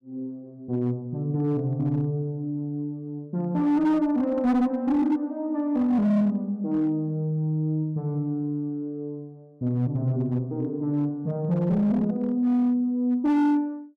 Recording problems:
distorted audio; hard clipping, signal-to-distortion ratio 11 dB

